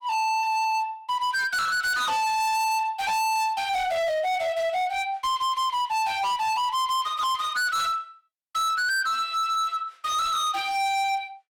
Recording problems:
distorted audio; hard clipping, signal-to-distortion ratio 6 dB

